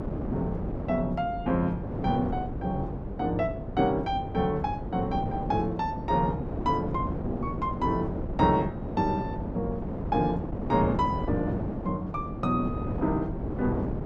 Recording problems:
hum; 50 Hz, harmonics up to 550 Hz, SNR 16 dB
wind noise; below 400 Hz, SNR 5 dB

